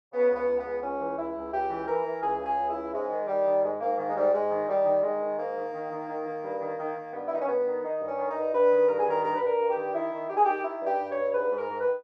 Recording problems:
none

